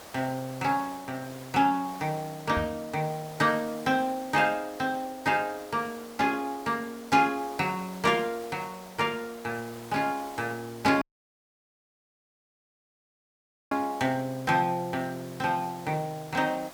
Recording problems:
background hiss; SNR 17 dB
microphone bump; at 2.5 s; peak -1 dB vs average level
dropout; at 11 s for 2.5 s

